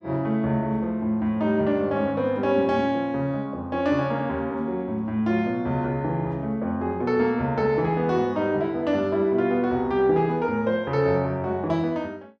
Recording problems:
none

